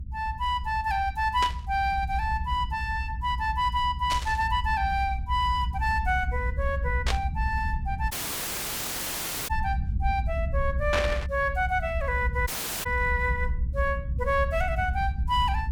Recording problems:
rumble; below 72 Hz, SNR 4 dB
burst of static; 4 times, first at 1.5 s; peak +3 dB vs average level
audio cutting out; at 8 s for 1.5 s and at 12 s

